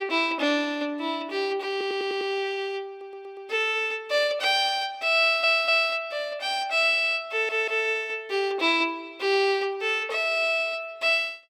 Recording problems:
audio stuttering; 4 times, first at 1.5 s

